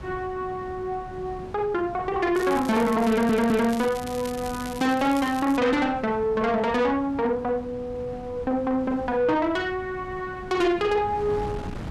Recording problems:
distorted audio; soft clipping, signal-to-distortion ratio 11 dB
wind noise; below 370 Hz, SNR 16 dB
crackling; from 2.5 to 5.5 s; loose cable, SNR 16 dB
audio stuttering; at 3 s

